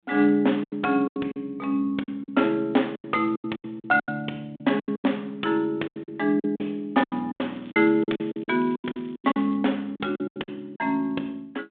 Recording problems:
phone line; 170 Hz to 3.6 kHz, G.726
lost packets; 16% of the sound replaced, filled with silence
crackle; from 7.5 to 9.5 s; loose cable, SNR 29 dB

